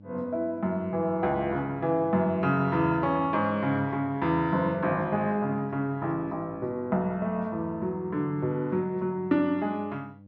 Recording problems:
hum; 50 Hz, harmonics up to 600 Hz, SNR 21 dB

